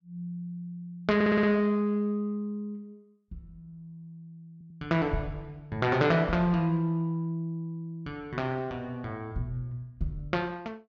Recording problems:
stutter; at 1 s and at 4.5 s

